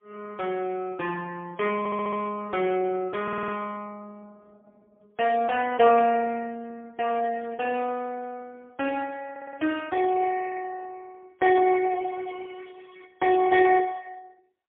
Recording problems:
phone line; 170 Hz to 3.3 kHz, AMR-NB, then MP3
audio stuttering; at 2 s, at 3 s and at 9.5 s

